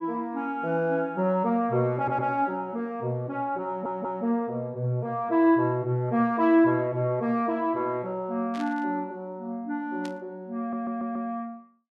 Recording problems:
stutter; at 2 s, at 3.5 s and at 11 s
static burst; at 8.5 s and at 10 s; peak -11 dB vs average level

